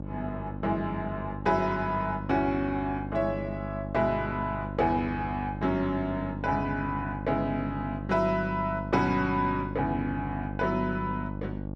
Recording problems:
hum; 50 Hz, harmonics up to 900 Hz, SNR 7 dB

